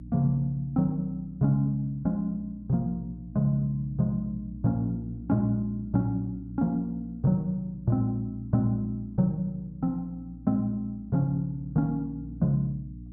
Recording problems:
hum; 60 Hz, harmonics up to 300 Hz, SNR 15 dB

